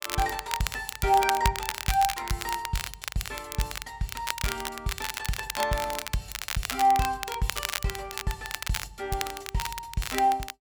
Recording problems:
crackle; vinyl, SNR 4 dB

